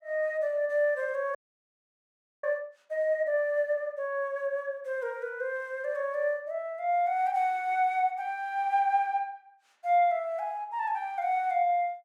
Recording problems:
frozen audio; at 1.5 s for 1 s

